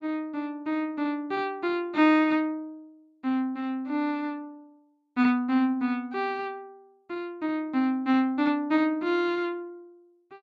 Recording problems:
none

